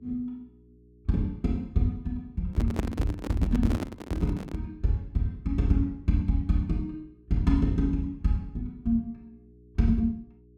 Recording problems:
hum; 60 Hz, harmonics up to 420 Hz, SNR 28 dB
microphone handling noise; from 2.5 to 4.5 s; peak +1 dB vs average level

